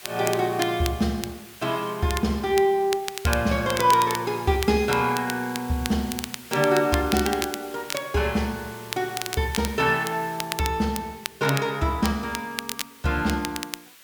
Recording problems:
background hiss; SNR 19 dB
crackling; vinyl, SNR 10 dB

